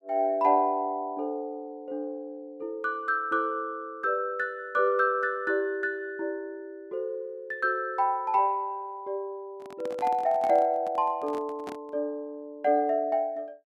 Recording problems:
microphone handling noise; from 9.5 to 12 s; peak -8 dB vs average level

